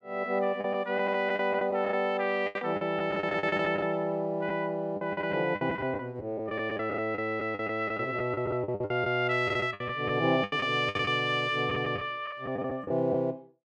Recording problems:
lost packets; 13% of the sound replaced, filled with the last packet

